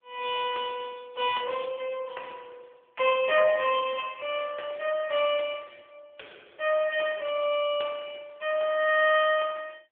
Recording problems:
phone line; 370 Hz to 3.4 kHz, AMR-NB

